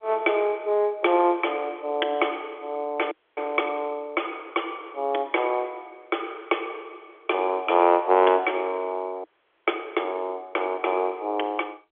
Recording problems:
telephone audio; 300 Hz to 3.5 kHz, G.711
frozen audio; at 3 s and at 9 s

